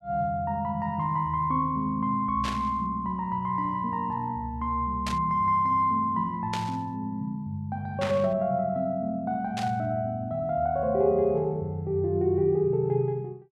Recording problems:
burst of static; 5 times, first at 2.5 s; peak -2 dB vs average level

